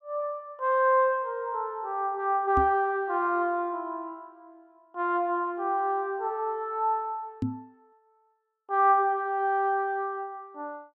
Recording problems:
microphone thump; at 2.5 s and at 7.5 s; peak +1 dB vs average level

